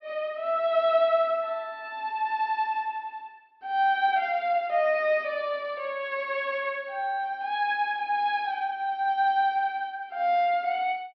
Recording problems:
treble missing; nothing above 5.5 kHz

